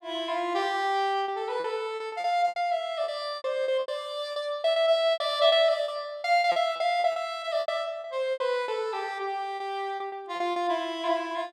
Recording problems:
lost packets; 13% of the sound replaced, filled with repeated pitch periods

